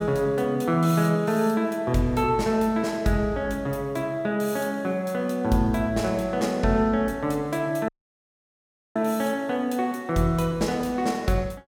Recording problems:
dropout; at 8 s for 1 s

